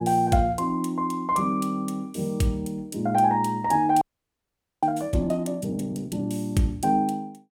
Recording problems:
frozen audio; at 4 s for 1 s

